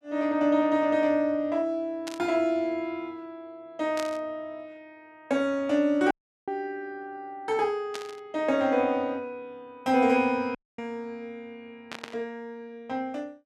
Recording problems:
burst of static; 4 times, first at 2 s; peak -5 dB vs average level
audio cutting out; at 6 s and at 11 s

